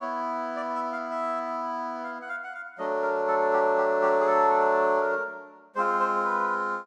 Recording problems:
none

